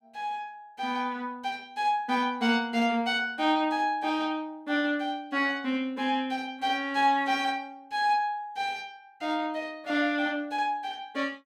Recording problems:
none

